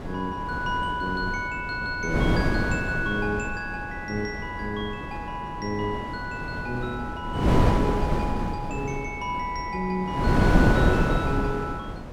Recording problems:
wind on the microphone; below 420 Hz, SNR -2 dB

